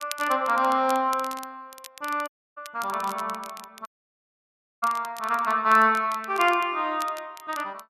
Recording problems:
crackle; vinyl, SNR 19 dB
dropout; at 2.5 s and at 4 s for 1 s

